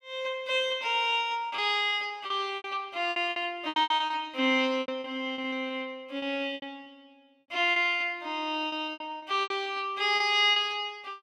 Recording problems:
lost packets; 13% of the sound replaced, filled with repeated pitch periods

